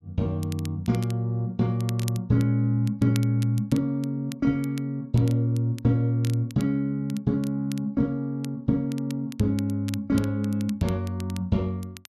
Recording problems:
crackle; vinyl, SNR 20 dB

